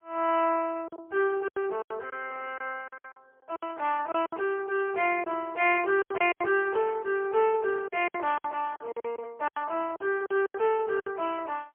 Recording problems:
phone line; 340 Hz to 3.5 kHz, AMR-NB, then MP3
packet loss; 12% of the sound replaced, filled with silence

